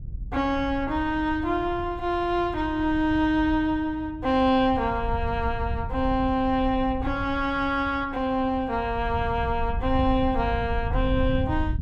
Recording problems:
wind noise; below 92 Hz, SNR 9 dB

